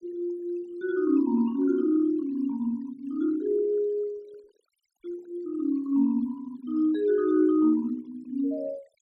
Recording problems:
noise reduction artefacts; signal-to-artefact ratio 26 dB

